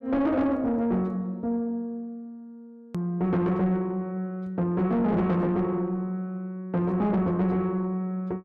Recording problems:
distorted audio; soft clipping, signal-to-distortion ratio 11 dB
hard cut with a click; at 3 s

